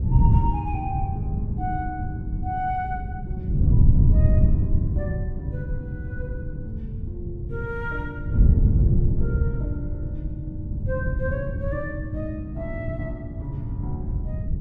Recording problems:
wind on the microphone; below 130 Hz, SNR -8 dB

